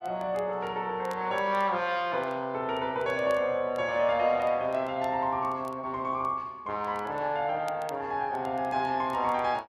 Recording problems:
crackle; vinyl, SNR 29 dB

